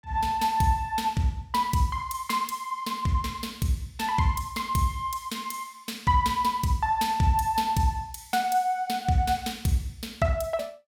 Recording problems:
none

